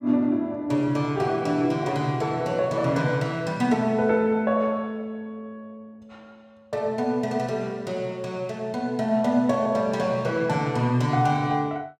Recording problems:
none

